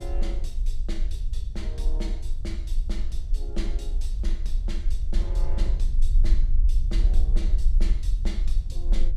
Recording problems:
low-frequency rumble; below 44 Hz, strongest tone 22 Hz, SNR -12 dB
wind on the microphone; below 420 Hz, SNR 21 dB

